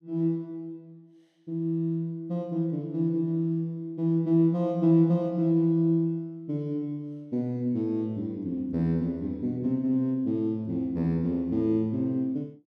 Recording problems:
none

